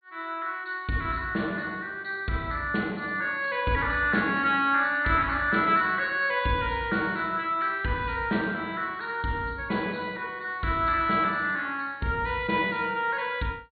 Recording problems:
treble cut off; nothing above 4.4 kHz

